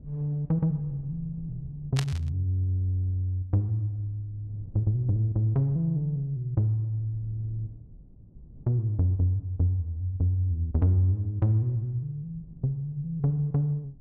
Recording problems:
rumble; below 140 Hz, SNR 23 dB
burst of static; at 2 s; peak 0 dB vs average level

